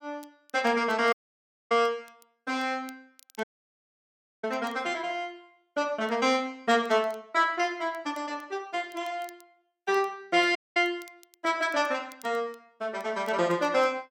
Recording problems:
crackling; vinyl, SNR 29 dB
dropout; at 1 s for 0.5 s, at 3.5 s for 1 s and at 11 s

